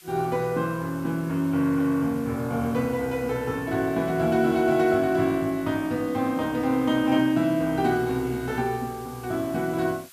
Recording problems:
background hiss; slope +3 dB per octave, SNR 23 dB

